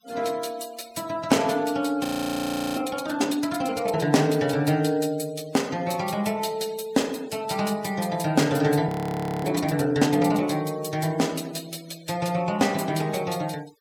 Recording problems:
noise reduction artefacts; signal-to-artefact ratio 22 dB
audio freezing; at 2 s for 0.5 s and at 9 s for 0.5 s

